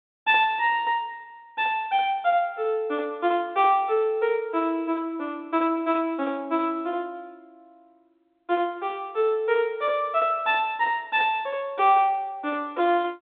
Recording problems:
telephone audio; 280 Hz to 3.7 kHz, G.726

